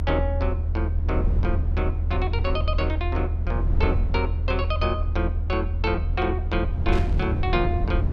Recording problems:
low-frequency rumble; below 80 Hz, strongest tone 38 Hz, SNR -3 dB
static burst; at 7 s; peak -5 dB vs average level

